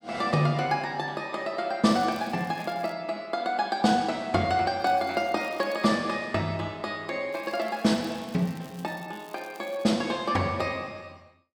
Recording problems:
crackle; from 2 to 3 s, from 5 to 6 s and from 7.5 to 10 s; loose cable, SNR 25 dB

